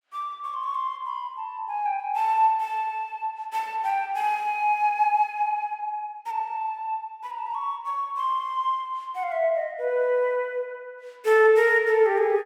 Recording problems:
none

